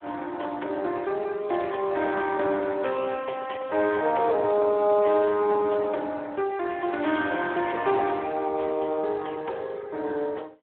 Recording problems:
telephone audio; 320 Hz to 3.2 kHz, Speex

